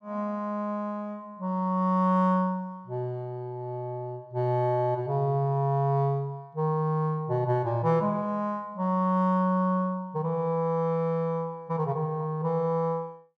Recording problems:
none

